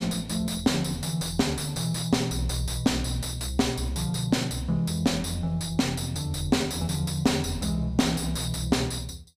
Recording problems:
distortion; soft clipping, signal-to-distortion ratio 6 dB

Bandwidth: 15 kHz